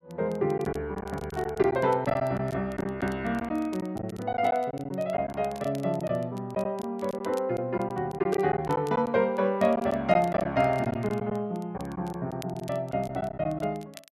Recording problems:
crackle; vinyl, SNR 24 dB
lost packets; 7% of the sound replaced, filled with silence

